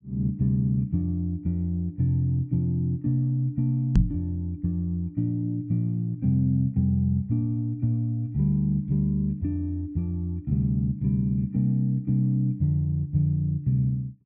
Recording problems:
knock on the microphone; at 4 s; peak +8 dB vs average level

